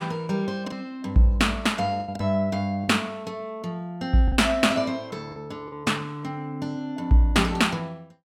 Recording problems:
lost packets; 4% of the sound replaced, filled with the last packet

